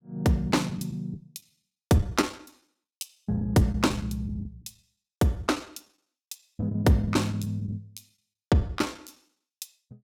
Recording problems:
lost packets; 11% of the sound replaced, filled with the last packet

